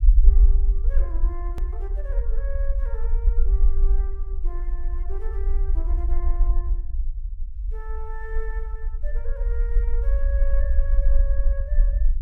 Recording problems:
low-frequency rumble; below 48 Hz, strongest tone 22 Hz, SNR -16 dB
click at an edit; at 1.5 s

